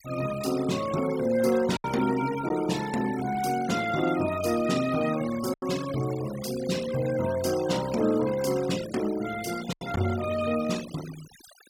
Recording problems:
noise reduction artefacts; signal-to-artefact ratio 14 dB
packet loss; 2% of the sound replaced, filled with silence

